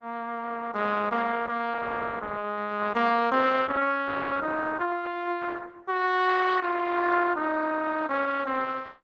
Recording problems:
codec artefacts; Opus, log-spectral distance 4 dB

